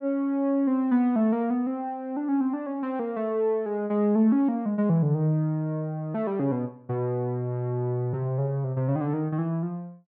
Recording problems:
none

